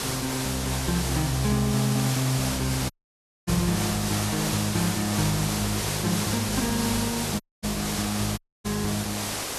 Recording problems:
hiss; slope -2 dB per octave, SNR 2 dB
wind noise; below 320 Hz, SNR 23 dB
dropout; at 3 s for 0.5 s, at 7.5 s and at 8.5 s

